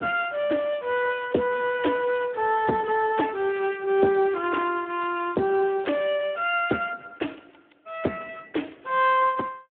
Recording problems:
phone line; 220 Hz to 3.4 kHz, Speex

